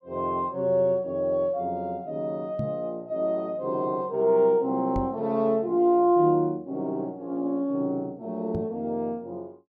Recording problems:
microphone thump; at 2.5 s, at 5 s and at 8.5 s; peak -2 dB vs average level

